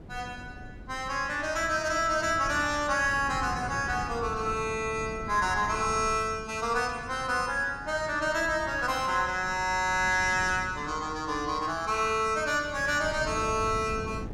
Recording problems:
wind noise; below 270 Hz, SNR 14 dB

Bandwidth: 16 kHz